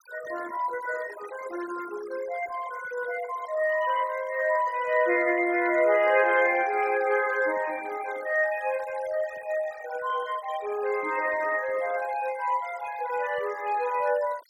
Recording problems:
noise reduction artefacts; signal-to-artefact ratio 17 dB

